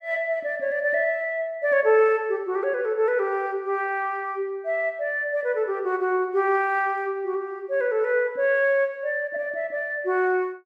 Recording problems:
none

